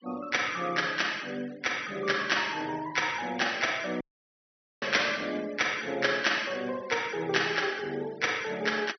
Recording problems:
treble cut off; nothing above 5.9 kHz
denoising artefacts; signal-to-artefact ratio 20 dB
dropout; at 4 s for 1 s

